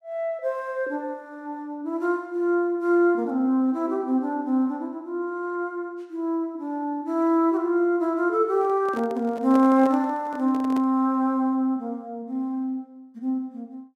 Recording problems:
microphone handling noise; from 8.5 to 11 s; peak -6 dB vs average level

